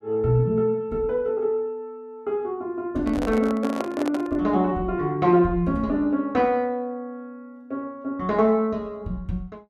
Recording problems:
handling noise; from 3 to 4.5 s; peak -2 dB vs average level

